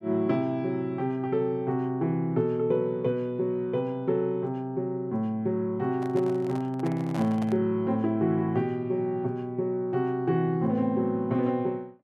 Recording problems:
handling noise; from 6 to 7.5 s; peak -6 dB vs average level

